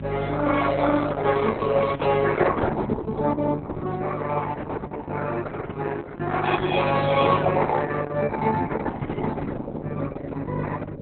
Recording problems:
lossy compression; Opus, then Opus, log-spectral distance 5 dB
electrical hum; 50 Hz, harmonics up to 600 Hz, SNR 5 dB
microphone bump; at 9 s; peak -4 dB vs average level

